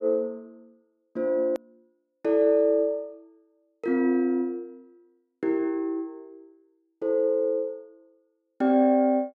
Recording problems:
edit click; at 1.5 s

